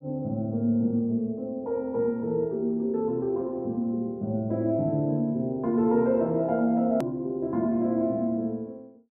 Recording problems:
hard cut with a click; at 7 s

